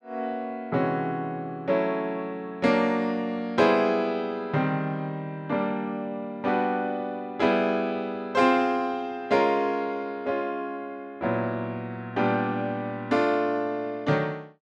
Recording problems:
none

